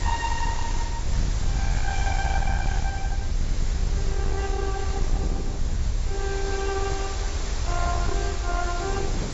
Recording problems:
lossy codec; AAC, log-spectral distance 8 dB, nothing above 7.1 kHz
distortion; soft clipping, signal-to-distortion ratio 8 dB
background hiss; slope -3 dB per octave, SNR 5 dB
rumble; below 68 Hz, SNR -3 dB
wind on the microphone; below 360 Hz, SNR 10 dB

